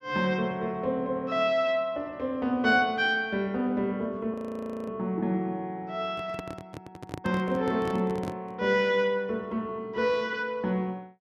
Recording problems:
frozen audio; at 4.5 s for 0.5 s
handling noise; from 6 to 8.5 s; peak -4 dB vs average level

